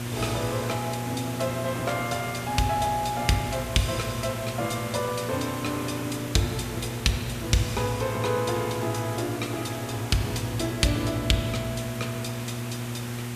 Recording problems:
hum; 60 Hz, harmonics up to 720 Hz, SNR 7 dB
background hiss; slope -2 dB per octave, SNR 9 dB

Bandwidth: 14.5 kHz